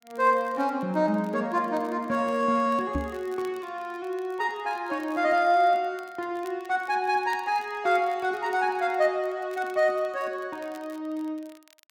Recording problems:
crackle; vinyl, SNR 29 dB
knock on the microphone; at 3 s; peak +1 dB vs average level

